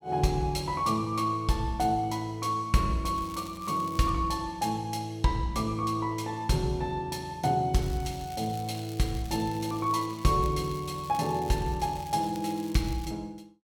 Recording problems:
crackle; at 3 s, from 7.5 to 10 s and from 10 to 13 s; loose cable, SNR 20 dB

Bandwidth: 17.5 kHz